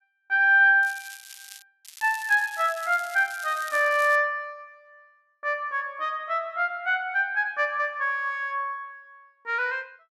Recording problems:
crackle; at 1 s and from 2 to 4 s; loose cable, SNR 19 dB

